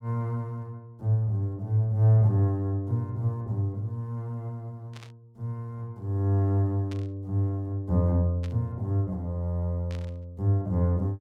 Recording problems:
static burst; 4 times, first at 5 s; peak -13 dB vs average level

